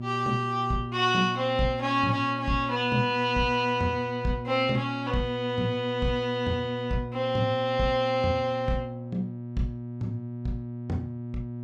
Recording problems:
electrical hum; 60 Hz, harmonics up to 600 Hz, SNR 9 dB

